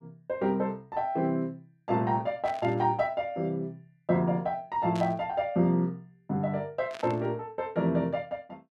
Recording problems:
burst of static; at 2.5 s, at 5 s and at 7 s; peak -10 dB vs average level

